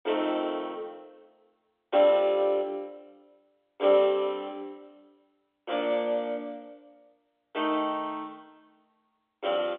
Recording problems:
telephone audio; 260 Hz to 3.7 kHz, G.711

